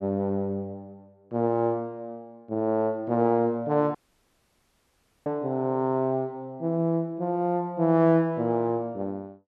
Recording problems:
dropout; at 4 s for 1.5 s

